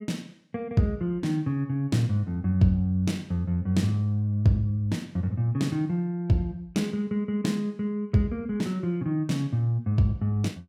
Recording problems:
none

